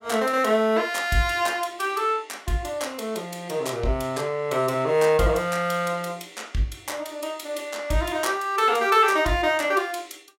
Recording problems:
none

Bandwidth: 16 kHz